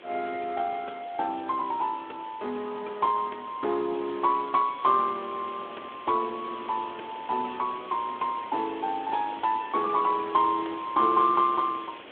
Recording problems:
telephone audio; 260 Hz to 3.6 kHz, Speex
hiss; SNR 18 dB

